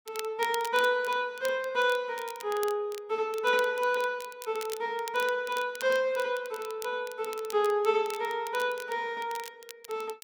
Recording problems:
crackle; vinyl, SNR 16 dB

